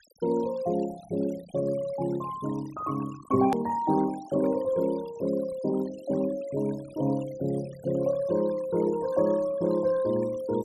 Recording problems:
noise reduction artefacts; signal-to-artefact ratio 21 dB
click at an edit; at 3.5 s

